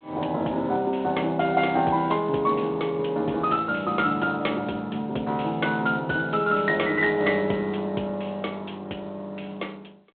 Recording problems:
telephone audio; 240 Hz to 3.8 kHz, G.726

